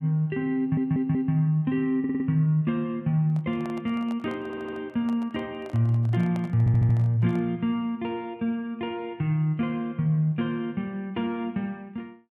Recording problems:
audio stuttering; 4 times, first at 0.5 s
microphone handling noise; from 3 to 7.5 s; peak -10 dB vs average level

